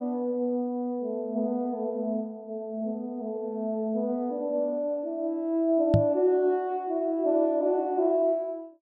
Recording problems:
microphone bump; at 6 s; peak +9 dB vs average level

